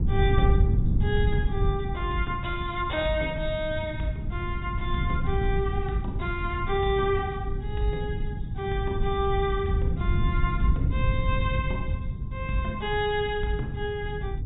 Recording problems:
low-pass filter; nothing above 4 kHz
wind noise; below 120 Hz, SNR 0 dB

